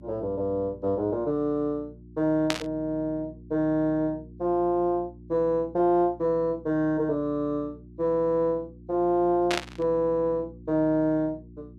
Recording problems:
hum; 60 Hz, harmonics up to 360 Hz, SNR 21 dB
burst of static; at 2.5 s and at 9.5 s; peak +3 dB vs average level

